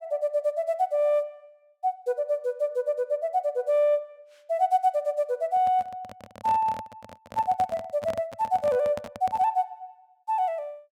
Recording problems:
microphone handling noise; from 5.5 to 9.5 s; peak -6 dB vs average level

